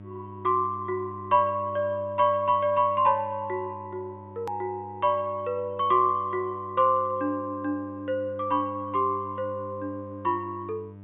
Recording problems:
treble missing; nothing above 4 kHz
hum; 50 Hz, harmonics up to 900 Hz, SNR 18 dB
click at an edit; at 4.5 s

